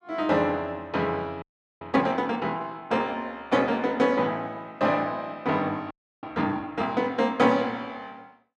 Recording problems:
frozen audio; at 1.5 s and at 6 s

